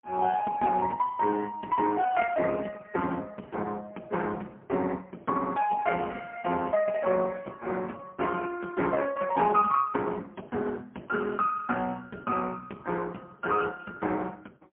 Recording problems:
telephone audio; 190 Hz to 3.4 kHz, AMR-NB, then MP3

